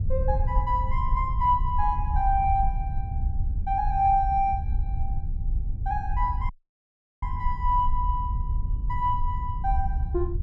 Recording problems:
low-frequency rumble; below 70 Hz, SNR 3 dB
audio cutting out; at 6.5 s for 0.5 s

